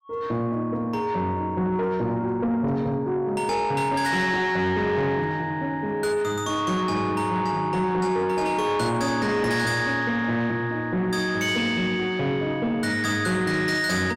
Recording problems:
distorted audio; soft clipping, signal-to-distortion ratio 11 dB

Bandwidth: 16.5 kHz